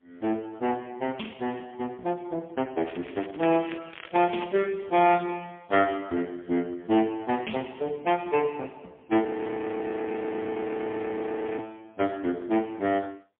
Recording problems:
telephone audio; 190 Hz to 3.3 kHz, AMR-NB, then MP3
crackling; from 3 to 4.5 s; loose cable, SNR 18 dB
audio freezing; at 9.5 s for 2.5 s

